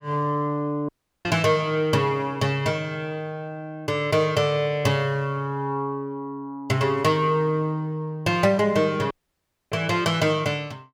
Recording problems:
dropout; at 1 s and at 9 s for 0.5 s

